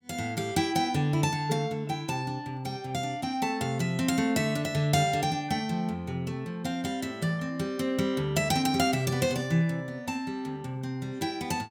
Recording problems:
none

